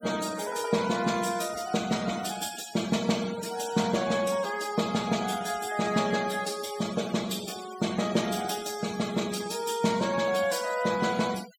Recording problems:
denoising artefacts; signal-to-artefact ratio 14 dB

